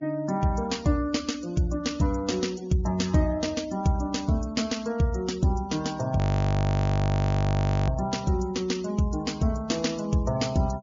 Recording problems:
treble missing; nothing above 7.2 kHz
denoising artefacts; signal-to-artefact ratio 22 dB
audio freezing; at 6 s for 1.5 s

